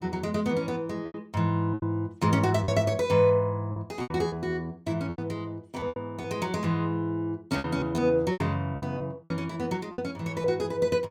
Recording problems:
packet loss; 9% of the sound replaced, filled with repeated pitch periods

